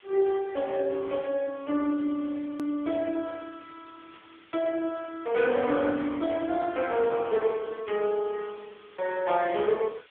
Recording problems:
phone line; 260 Hz to 3.4 kHz, AMR-NB
background hiss; SNR 27 dB
click at an edit; at 2.5 s

